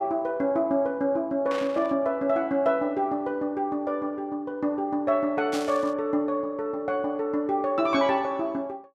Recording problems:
static burst; at 1.5 s and at 5.5 s; peak -5 dB vs average level

